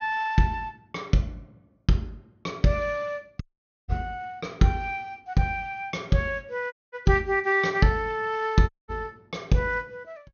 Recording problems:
treble cut off; nothing above 6.5 kHz
dropout; at 3.5 s, at 6.5 s and at 8.5 s

